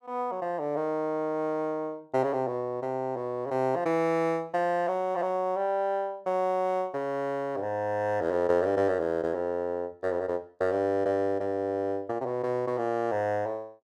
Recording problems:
none

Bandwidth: 13.5 kHz